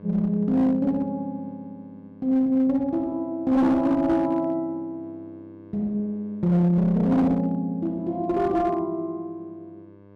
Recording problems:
distorted audio; hard clipping, uneven, signal-to-distortion ratio 12 dB
mains hum; 50 Hz, harmonics up to 1.7 kHz, SNR 26 dB

